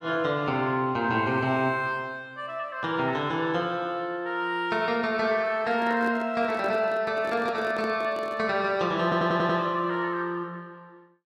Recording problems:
handling noise; from 5.5 to 8.5 s; peak -7 dB vs average level
audio stuttering; at 9 s

